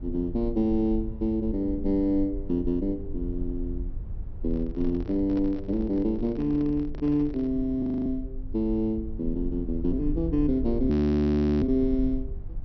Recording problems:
low-pass filter; nothing above 5.9 kHz
rumble; below 74 Hz, SNR 9 dB
handling noise; from 4.5 to 7.5 s; peak -9 dB vs average level
audio freezing; at 8 s and at 11 s for 0.5 s

